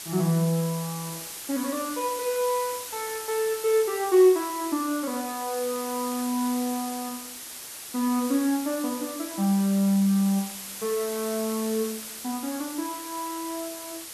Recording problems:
background hiss; slope +1 dB per octave, SNR 9 dB

